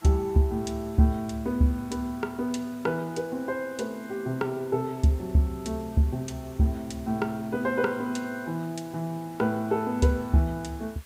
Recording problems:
hiss; slope -1 dB per octave, SNR 24 dB

